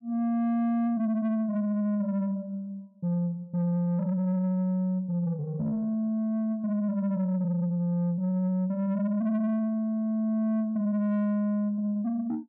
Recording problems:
distorted audio; soft clipping, signal-to-distortion ratio 12 dB

